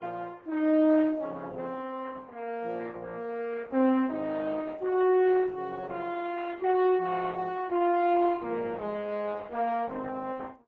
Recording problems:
lossy codec; Opus, then AAC, log-spectral distance 3 dB

